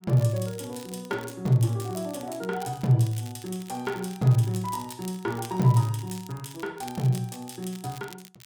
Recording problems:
crackling; vinyl, SNR 20 dB

